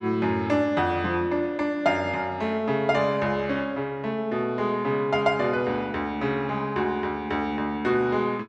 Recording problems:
none

